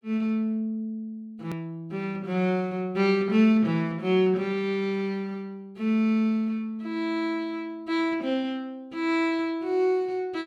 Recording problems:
edit click; at 1.5 s

